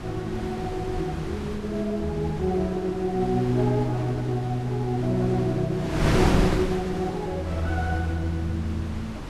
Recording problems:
wind noise; below 660 Hz, SNR 5 dB

